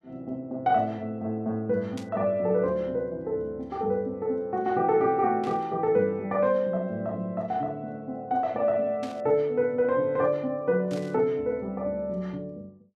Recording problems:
static burst; 4 times, first at 2 s; peak -12 dB vs average level

